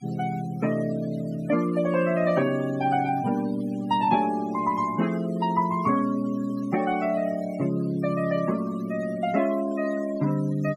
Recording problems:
denoising artefacts; signal-to-artefact ratio 16 dB

